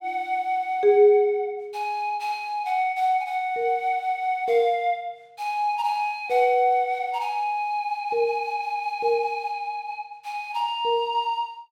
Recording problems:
none

